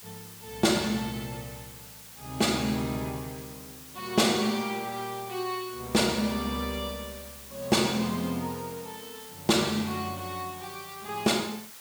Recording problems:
hiss; slope +1 dB per octave, SNR 15 dB

